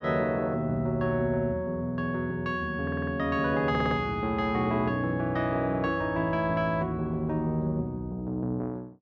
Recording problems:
stutter; at 3 s and at 3.5 s

